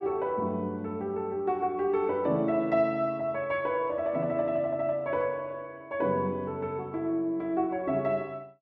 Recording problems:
none

